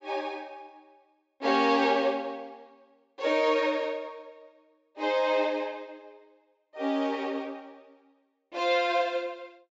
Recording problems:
low-pass filter; nothing above 8 kHz

